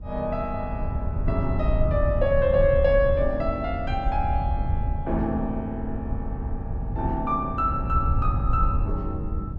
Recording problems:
wind noise; below 96 Hz, SNR 2 dB

